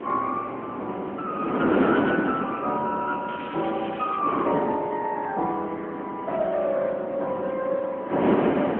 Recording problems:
telephone audio; 220 Hz to 3.6 kHz, AMR-NB
wind noise; below 630 Hz, SNR 1 dB
crackle; at 3.5 s; loose cable, SNR 15 dB

